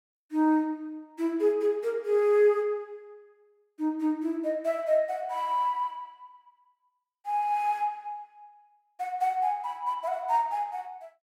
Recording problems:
none

